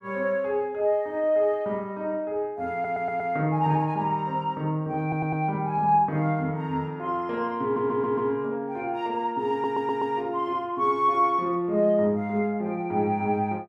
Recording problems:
stutter; 4 times, first at 2.5 s

